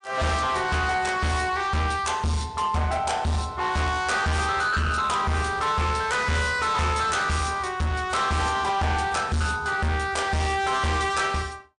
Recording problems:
lossy codec; MP3, log-spectral distance 3 dB, nothing above 9.2 kHz
distortion; hard clipping, signal-to-distortion ratio 7 dB

